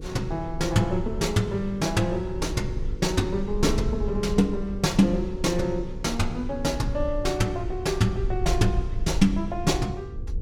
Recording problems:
mains hum; 50 Hz, harmonics up to 500 Hz, SNR 17 dB
rumble; below 60 Hz, SNR 8 dB

